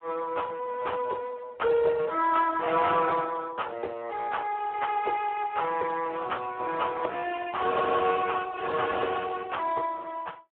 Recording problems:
telephone audio; 340 Hz to 2.2 kHz, Speex

